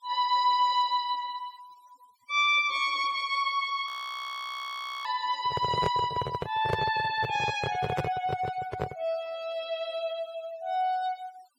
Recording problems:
denoising artefacts; signal-to-artefact ratio 21 dB
frozen audio; at 4 s for 1 s
handling noise; from 5.5 to 9 s; peak +4 dB vs average level

